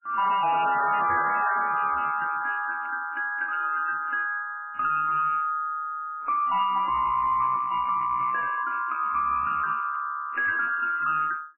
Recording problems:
lossy codec; MP3, then MP3, log-spectral distance 4 dB, nothing above 2.8 kHz
distorted audio; hard clipping, uneven, signal-to-distortion ratio 10 dB

